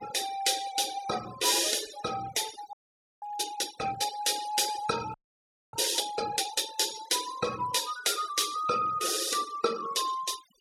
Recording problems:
denoising artefacts; signal-to-artefact ratio 14 dB
frozen audio; at 2.5 s and at 5 s for 0.5 s

